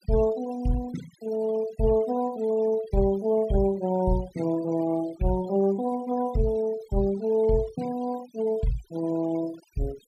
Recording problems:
denoising artefacts; signal-to-artefact ratio 19 dB

